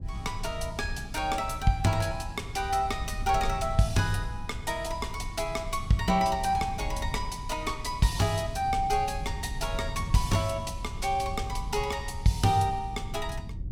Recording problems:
low-frequency rumble; below 100 Hz, SNR 9 dB

